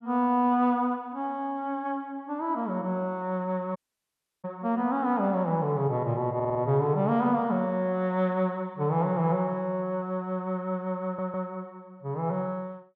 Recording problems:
audio cutting out; at 4 s for 0.5 s
audio stuttering; at 6.5 s and at 11 s

